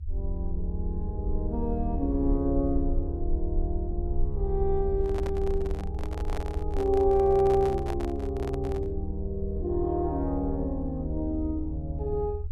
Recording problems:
low-frequency rumble; below 78 Hz, SNR 4 dB
handling noise; from 5 to 9 s; peak -5 dB vs average level

